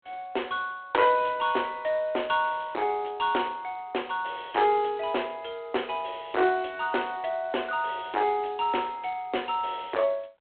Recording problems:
phone line; 280 Hz to 3.4 kHz, G.726
distortion; hard clipping, signal-to-distortion ratio 7 dB

